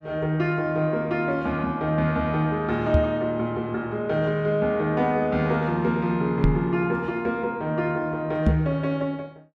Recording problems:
knock on the microphone; at 3 s, at 6.5 s and at 8.5 s; peak +8 dB vs average level

